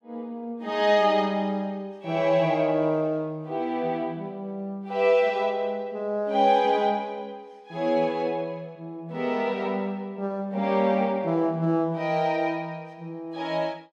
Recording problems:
none

